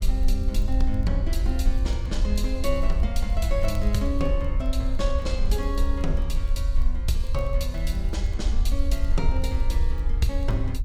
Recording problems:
rumble; below 58 Hz, SNR -4 dB
crackle; vinyl, SNR 29 dB

